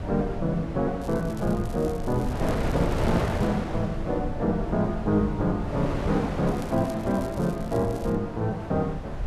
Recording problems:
rumble; below 88 Hz, SNR 10 dB
wind noise; below 860 Hz, SNR 8 dB
crackling; from 1 to 3.5 s and from 6.5 to 8 s; loose cable, SNR 22 dB

